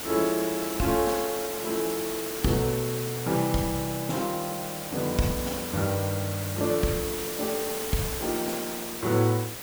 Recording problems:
hiss; slope -2 dB per octave, SNR 5 dB

